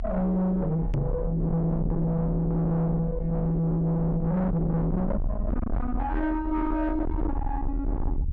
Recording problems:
distortion; soft clipping, signal-to-distortion ratio 7 dB
rumble; below 160 Hz, SNR 5 dB
microphone bump; at 1 s; peak +2 dB vs average level

